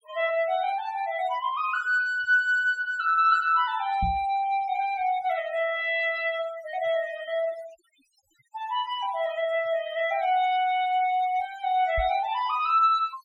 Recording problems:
denoising artefacts; signal-to-artefact ratio 20 dB
knock on the microphone; at 4 s and at 12 s; peak -2 dB vs average level

